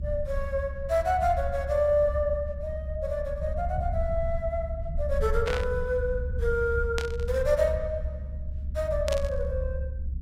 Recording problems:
rumble; below 72 Hz, SNR 5 dB
static burst; at 5.5 s, at 7 s and at 9 s; peak 0 dB vs average level

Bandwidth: 16 kHz